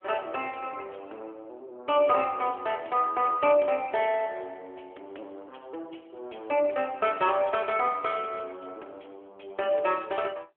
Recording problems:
telephone audio; 300 Hz to 3.3 kHz, AMR-NB

